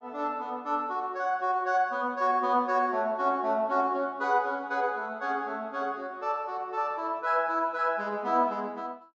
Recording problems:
treble cut off; nothing above 8 kHz

